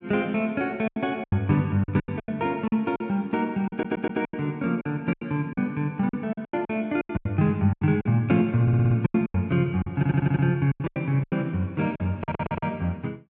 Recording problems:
packet loss; 15% of the sound replaced, filled with silence
audio stuttering; 4 times, first at 3.5 s

